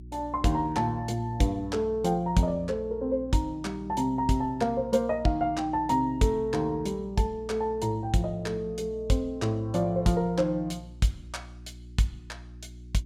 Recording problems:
electrical hum; 60 Hz, harmonics up to 360 Hz, SNR 18 dB

